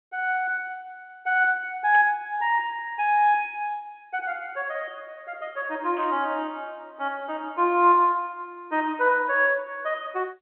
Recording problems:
phone line; 280 Hz to 3.3 kHz, G.711
static burst; at 2 s and at 6 s; peak -12 dB vs average level

